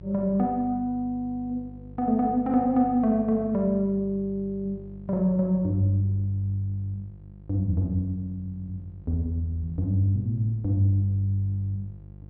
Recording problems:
electrical hum; 50 Hz, harmonics up to 550 Hz, SNR 19 dB

